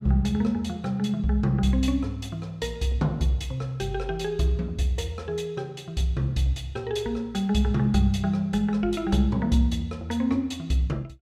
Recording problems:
none

